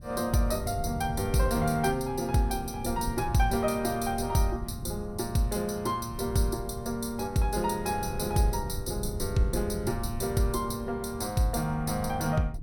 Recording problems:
wind noise; below 130 Hz, SNR 10 dB

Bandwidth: 17 kHz